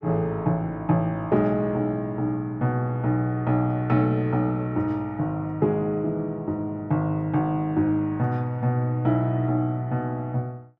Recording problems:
none

